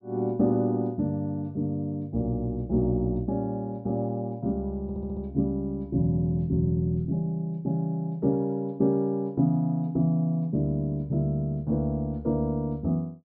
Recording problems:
low-pass filter; nothing above 5.5 kHz
audio stuttering; at 5 s

